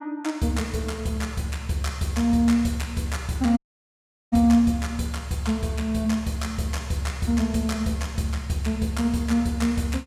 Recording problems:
dropout; at 3.5 s for 1 s

